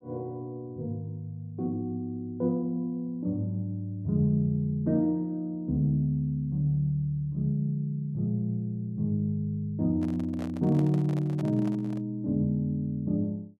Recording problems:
handling noise; from 10 to 12 s; peak -9 dB vs average level

